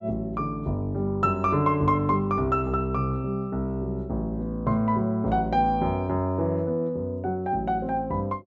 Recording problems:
none

